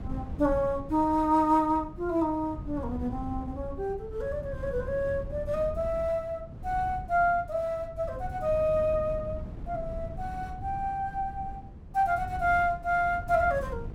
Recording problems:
wind noise; below 150 Hz, SNR 12 dB

